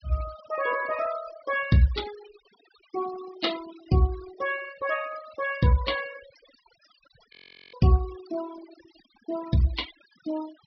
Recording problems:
low-pass filter; nothing above 5.5 kHz
noise reduction artefacts; signal-to-artefact ratio 15 dB
audio freezing; at 7.5 s

